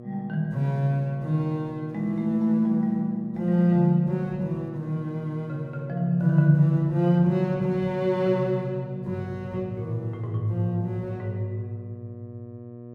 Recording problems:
hum; 60 Hz, harmonics up to 1.1 kHz, SNR 17 dB

